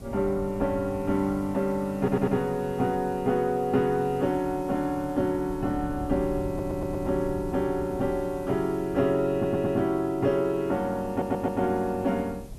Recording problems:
hiss; slope +2 dB per octave, SNR 27 dB
wind on the microphone; below 200 Hz, SNR 15 dB
stutter; 4 times, first at 2 s

